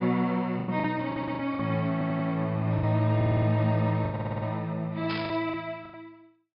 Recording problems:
treble cut off; nothing above 5.5 kHz
packet loss; 9% of the sound replaced, filled with the last packet
stutter; 4 times, first at 1 s
burst of static; at 5 s; peak -5 dB vs average level

